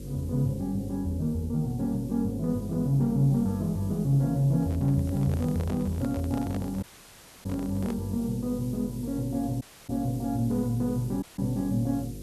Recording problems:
electrical hum; 50 Hz, harmonics up to 550 Hz, SNR 13 dB
hiss; slope +5 dB per octave, SNR 23 dB
handling noise; from 4.5 to 8 s; peak -7 dB vs average level
audio cutting out; at 7 s for 0.5 s, at 9.5 s and at 11 s

